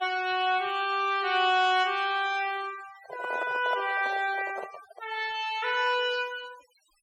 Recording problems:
noise reduction artefacts; signal-to-artefact ratio 18 dB
microphone handling noise; from 3 to 5 s; peak -4 dB vs average level

